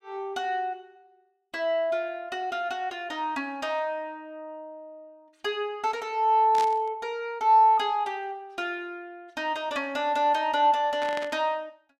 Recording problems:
burst of static; at 6.5 s and at 11 s; peak -6 dB vs average level

